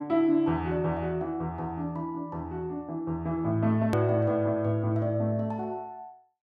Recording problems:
edit click; at 4 s

